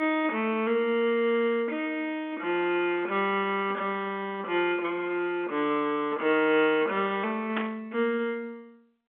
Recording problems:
telephone audio; 190 Hz to 3.4 kHz, G.711
static burst; at 7.5 s; peak 0 dB vs average level

